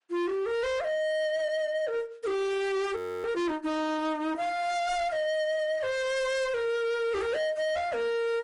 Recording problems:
codec artefacts; AAC, then MP3, log-spectral distance 2 dB
distorted audio; hard clipping, signal-to-distortion ratio 7 dB
frozen audio; at 3 s

